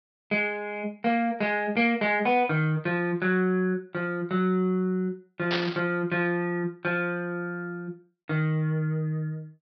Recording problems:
treble cut off; nothing above 5.5 kHz
static burst; at 5.5 s; peak +2 dB vs average level

